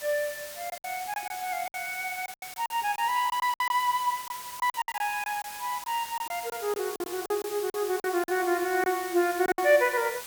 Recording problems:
background hiss; slope +1 dB per octave, SNR 11 dB
lost packets; 11% of the sound replaced, filled with silence

